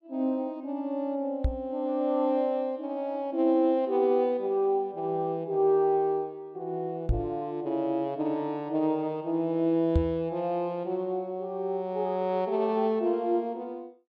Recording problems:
microphone bump; at 1.5 s, at 7 s and at 10 s; peak +6 dB vs average level

